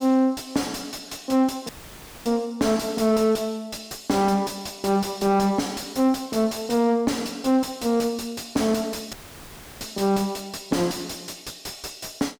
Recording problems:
distortion; soft clipping, signal-to-distortion ratio 6 dB
dropout; at 1.5 s for 0.5 s and at 9 s for 0.5 s

